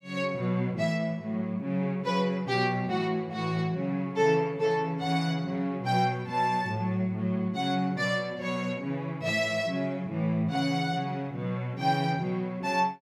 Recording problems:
none

